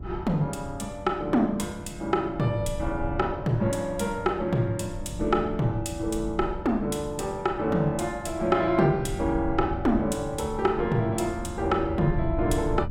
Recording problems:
mains hum; 50 Hz, harmonics up to 1.1 kHz, SNR 21 dB
low-frequency rumble; below 120 Hz, SNR 12 dB

